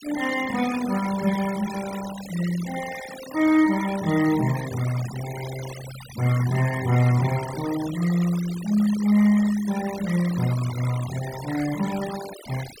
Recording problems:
noise reduction artefacts; signal-to-artefact ratio 13 dB

